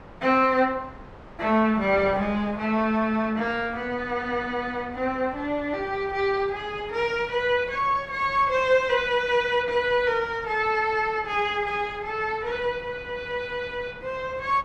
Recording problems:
wind noise; below 990 Hz, SNR 20 dB

